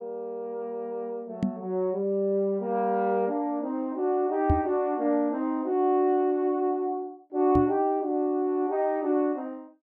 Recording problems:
microphone thump; at 1.5 s, at 4.5 s and at 7.5 s; peak +6 dB vs average level

